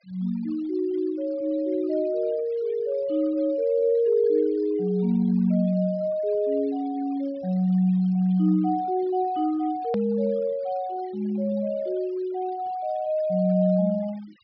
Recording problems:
treble cut off; nothing above 5.5 kHz
denoising artefacts; signal-to-artefact ratio 27 dB
click at an edit; at 10 s

